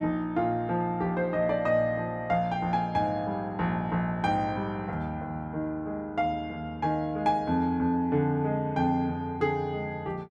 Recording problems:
none

